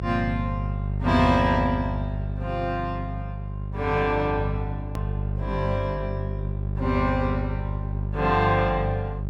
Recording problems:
hum; 50 Hz, harmonics up to 600 Hz, SNR 4 dB
edit click; at 5 s

